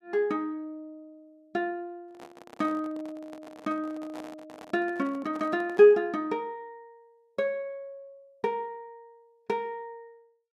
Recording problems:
microphone handling noise; from 2 to 6 s; peak -10 dB vs average level

